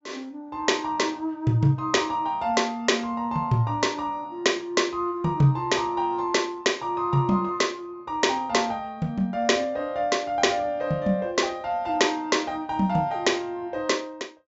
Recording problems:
low-pass filter; nothing above 8 kHz

